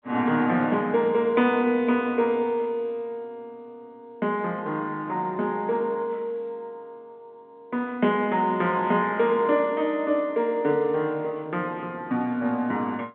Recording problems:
phone line; 190 Hz to 3.5 kHz, G.711

